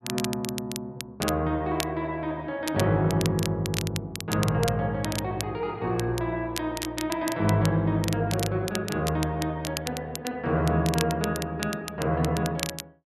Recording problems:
crackling; vinyl, SNR 9 dB

